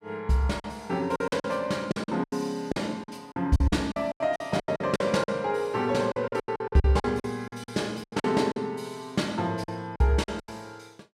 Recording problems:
packet loss; 15% of the sound replaced, filled with silence

